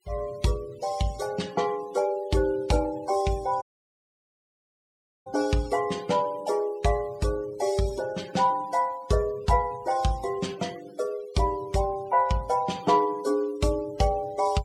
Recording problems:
denoising artefacts; signal-to-artefact ratio 20 dB
audio cutting out; at 3.5 s for 1.5 s

